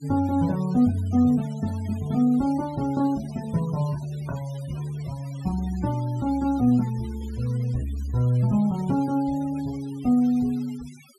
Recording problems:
denoising artefacts; signal-to-artefact ratio 22 dB

